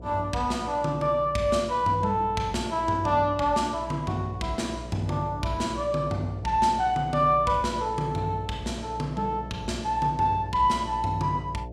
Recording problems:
electrical hum; 60 Hz, harmonics up to 720 Hz, SNR 14 dB

